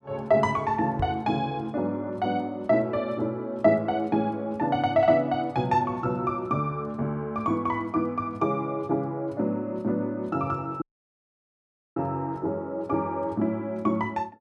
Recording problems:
microphone thump; at 1 s; peak -2 dB vs average level
audio cutting out; at 11 s for 1 s

